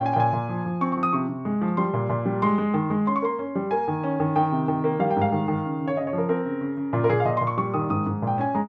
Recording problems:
none

